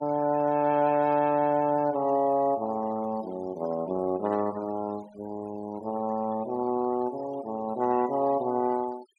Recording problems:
denoising artefacts; signal-to-artefact ratio 22 dB

